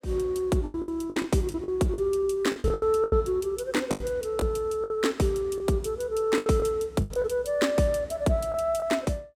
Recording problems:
packet loss; 11% of the sound replaced, filled with the last packet

